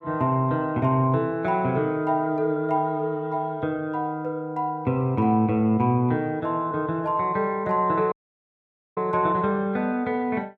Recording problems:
dropout; at 8 s for 1 s

